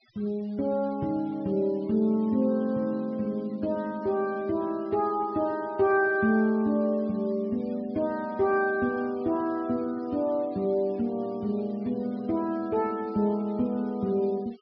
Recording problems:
treble missing; nothing above 5.5 kHz
noise reduction artefacts; signal-to-artefact ratio 28 dB

